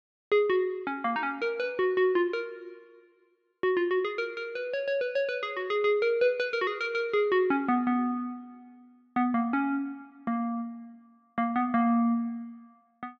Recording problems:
none

